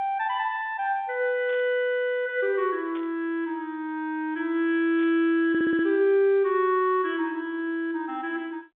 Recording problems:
phone line; 280 Hz to 4 kHz, G.711
static burst; at 1.5 s, at 3 s and at 5 s; peak -16 dB vs average level
audio stuttering; at 5.5 s

